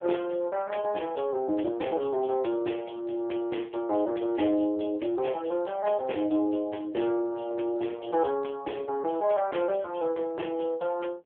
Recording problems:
phone line; 260 Hz to 3.3 kHz, AMR-NB

